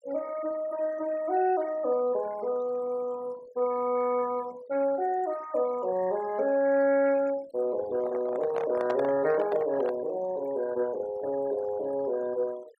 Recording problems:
noise reduction artefacts; signal-to-artefact ratio 19 dB
handling noise; from 8 to 10 s; peak -1 dB vs average level

